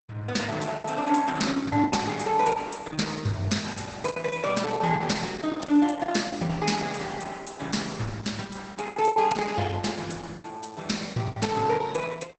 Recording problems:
lossy compression; Opus, log-spectral distance 6 dB, nothing above 8 kHz
packet loss; 10% of the sound replaced, filled with the last packet

